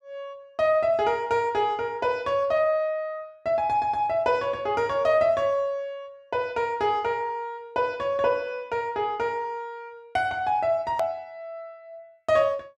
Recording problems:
click at an edit; at 11 s

